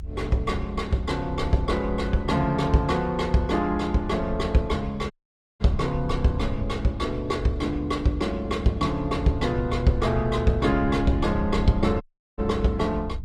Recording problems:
codec artefacts; Opus, log-spectral distance 2 dB, nothing above 15.5 kHz
low-frequency rumble; below 78 Hz, SNR 9 dB
audio cutting out; at 5 s and at 12 s

